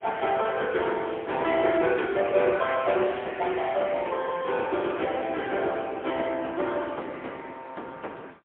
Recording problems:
telephone audio; 280 Hz to 3.4 kHz, AMR-NB, then MP3

